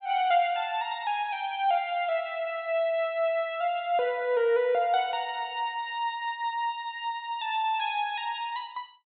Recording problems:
treble cut off; nothing above 4 kHz

